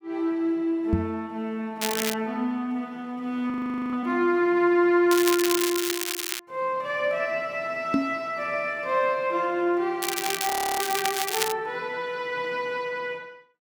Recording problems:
knock on the microphone; at 1 s and at 8 s; peak +5 dB vs average level
crackling; at 2 s, from 5 to 6.5 s and from 10 to 12 s; loose cable, SNR 2 dB
audio freezing; at 3.5 s and at 11 s

